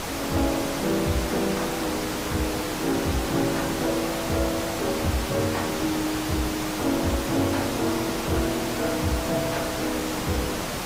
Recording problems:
codec artefacts; AAC, log-spectral distance 4 dB, nothing above 15.6 kHz
distortion; soft clipping, signal-to-distortion ratio 1 dB
hiss; slope -7 dB per octave, SNR 2 dB

